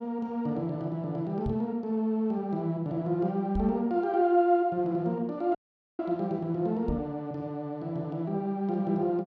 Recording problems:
microphone bump; at 1.5 s, at 3.5 s and at 7 s; peak 0 dB vs average level
dropout; at 5.5 s

